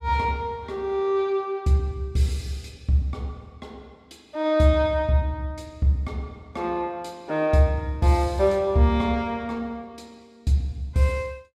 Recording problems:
none

